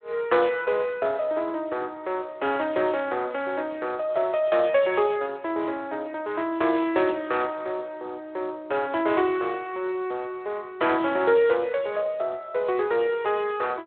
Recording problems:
phone line; 320 Hz to 3.8 kHz, Speex

